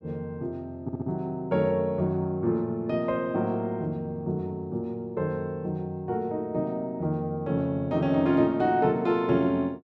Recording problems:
stutter; at 1 s

